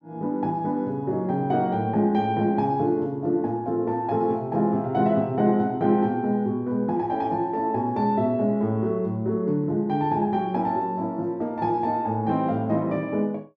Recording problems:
none

